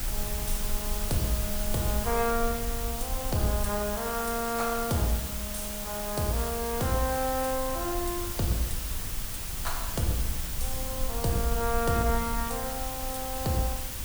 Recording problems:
background hiss; slope -1 dB per octave, SNR 3 dB
rumble; below 56 Hz, SNR 8 dB

